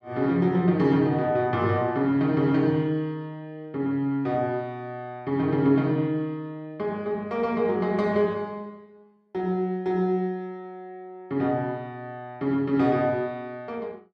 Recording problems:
none

